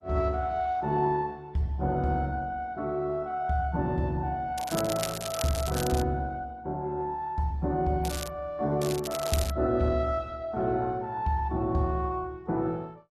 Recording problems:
lossy compression; Opus, log-spectral distance 3 dB
crackling; from 4.5 to 6 s, at 8 s and at 9 s; loose cable, SNR 8 dB

